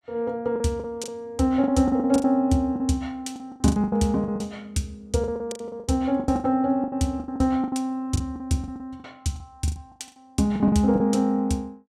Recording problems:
packet loss; 17% of the sound replaced, filled with the last packet

